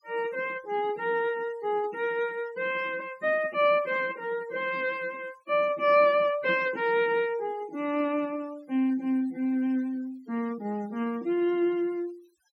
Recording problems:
denoising artefacts; signal-to-artefact ratio 25 dB

